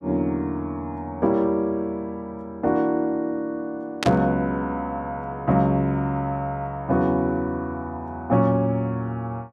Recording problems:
static burst; at 4 s; peak +3 dB vs average level

